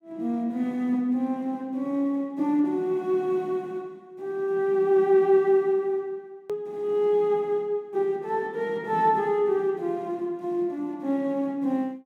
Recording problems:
edit click; at 6.5 s

